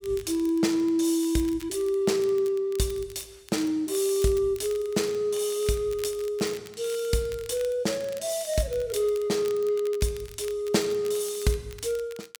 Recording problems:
crackling; vinyl, SNR 21 dB

